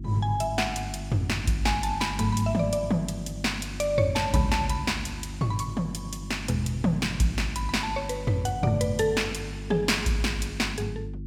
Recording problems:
hum; 50 Hz, harmonics up to 350 Hz, SNR 10 dB

